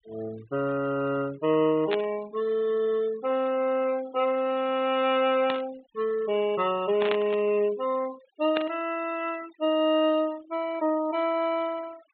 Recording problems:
treble missing; nothing above 4 kHz
denoising artefacts; signal-to-artefact ratio 21 dB
static burst; 4 times, first at 2 s; peak 0 dB vs average level

